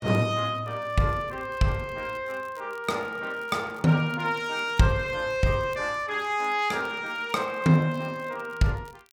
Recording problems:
crackle; vinyl, SNR 30 dB

